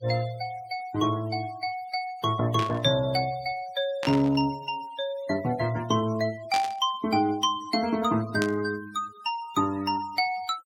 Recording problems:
denoising artefacts; signal-to-artefact ratio 20 dB
burst of static; 4 times, first at 2.5 s; peak -1 dB vs average level

